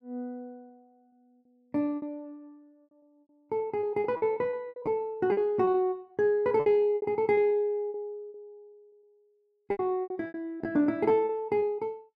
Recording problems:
packet loss; 13% of the sound replaced, filled with repeated pitch periods

